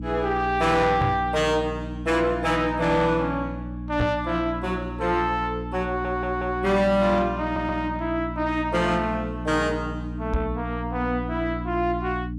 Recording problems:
distortion; soft clipping, signal-to-distortion ratio 12 dB
hum; 60 Hz, harmonics up to 300 Hz, SNR 8 dB
microphone bump; at 1 s, at 4 s and at 10 s; peak +3 dB vs average level
stutter; at 6 s and at 7.5 s

